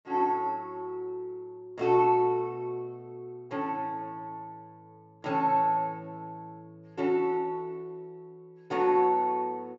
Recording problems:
low-pass filter; nothing above 7.5 kHz

